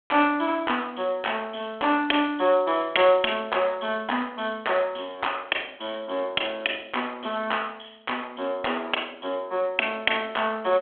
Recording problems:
phone line; 240 Hz to 3.4 kHz, G.726

